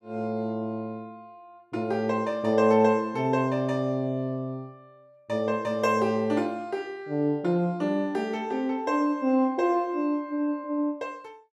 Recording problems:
none

